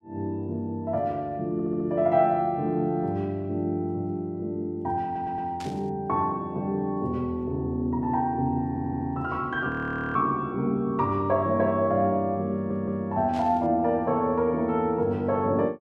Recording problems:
stutter; 4 times, first at 1.5 s
static burst; at 5.5 s and at 13 s; peak -11 dB vs average level
frozen audio; at 9.5 s

